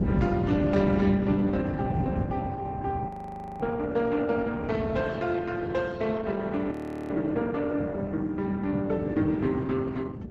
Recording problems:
lossy codec; Opus, log-spectral distance 3 dB, nothing above 13.1 kHz
wind on the microphone; below 250 Hz, SNR 5 dB
frozen audio; at 3 s for 0.5 s and at 6.5 s

